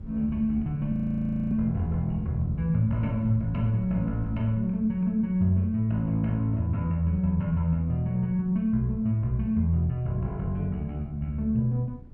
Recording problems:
wind on the microphone; below 130 Hz, SNR 18 dB
audio freezing; at 1 s for 0.5 s

